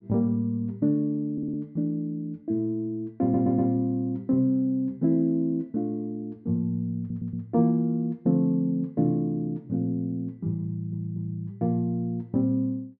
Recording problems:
audio stuttering; 4 times, first at 1.5 s

